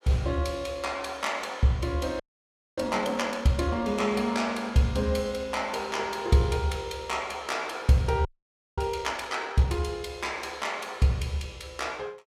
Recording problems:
frozen audio; at 2 s for 0.5 s and at 8.5 s for 0.5 s

